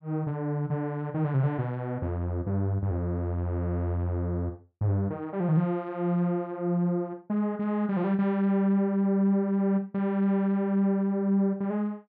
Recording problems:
none

